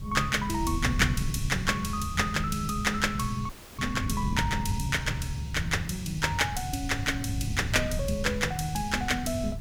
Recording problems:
background hiss; slope -3 dB per octave, SNR 25 dB
wind noise; below 150 Hz, SNR 6 dB
frozen audio; at 3.5 s

